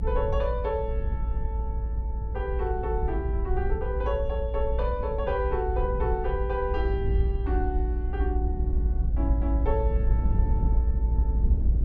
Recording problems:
rumble; below 68 Hz, strongest tone 54 Hz, SNR -3 dB

